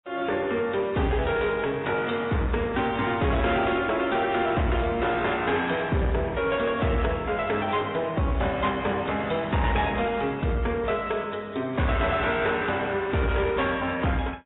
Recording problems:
treble missing; nothing above 3.6 kHz
codec artefacts; MP3, then AAC, log-spectral distance 4 dB
distortion; soft clipping, signal-to-distortion ratio 11 dB

